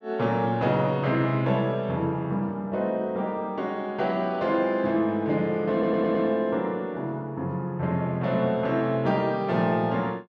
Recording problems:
audio stuttering; at 5.5 s

